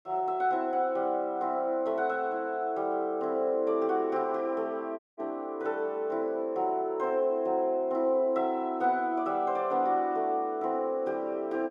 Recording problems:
audio cutting out; at 5 s

